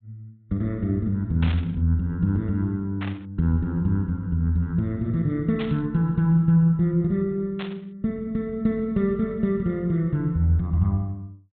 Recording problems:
low-pass filter; nothing above 4 kHz
burst of static; 4 times, first at 1.5 s; peak -7 dB vs average level

